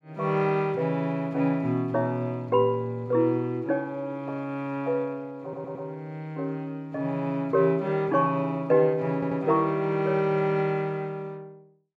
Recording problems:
stutter; at 5.5 s and at 9 s

